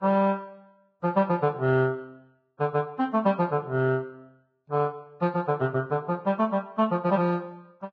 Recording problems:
codec artefacts; Vorbis, log-spectral distance 2 dB

